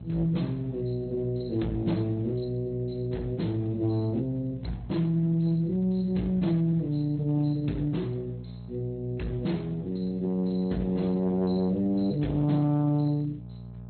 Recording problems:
treble cut off; nothing above 4.2 kHz
lossy codec; Speex, log-spectral distance 2 dB
distorted audio; soft clipping, signal-to-distortion ratio 12 dB
electrical hum; 60 Hz, harmonics up to 660 Hz, SNR 13 dB

